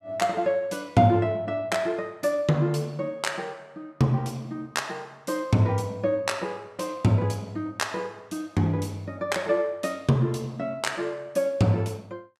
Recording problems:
none

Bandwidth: 14.5 kHz